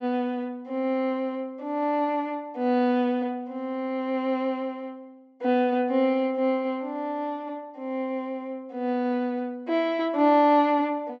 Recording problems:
treble missing; nothing above 8 kHz

